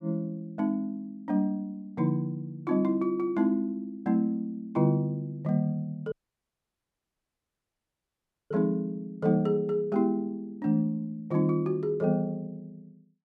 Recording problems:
dropout; at 6 s for 2.5 s

